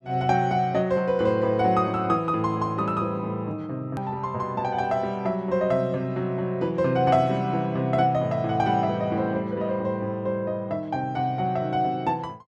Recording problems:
hard cut with a click; at 4 s

